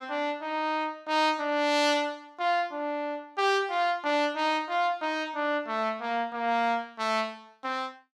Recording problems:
none

